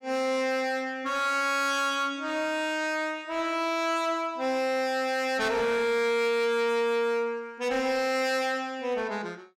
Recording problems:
distortion; hard clipping, uneven, signal-to-distortion ratio 12 dB

